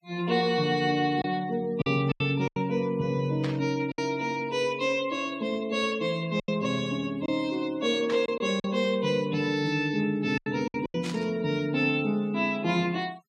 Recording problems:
denoising artefacts; signal-to-artefact ratio 25 dB
packet loss; 5% of the sound replaced, filled with silence
static burst; at 3.5 s, at 8 s and at 11 s; peak -6 dB vs average level

